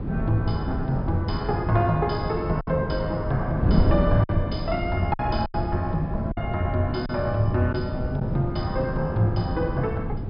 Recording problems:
treble missing; nothing above 5.5 kHz
wind on the microphone; below 210 Hz, SNR 3 dB
lost packets; 3% of the sound replaced, filled with silence

